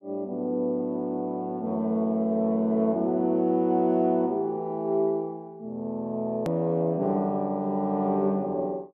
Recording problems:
edit click; at 6.5 s

